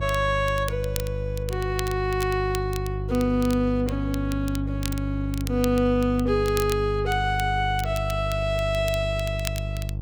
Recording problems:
mains hum; 50 Hz, harmonics up to 500 Hz, SNR 4 dB
crackle; vinyl, SNR 14 dB

